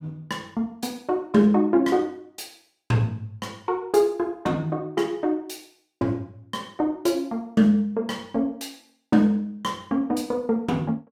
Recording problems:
none

